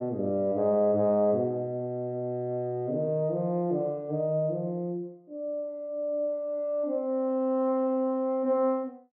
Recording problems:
none

